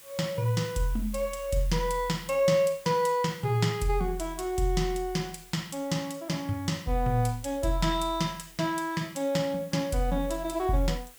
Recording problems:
hiss; slope -1 dB per octave, SNR 21 dB

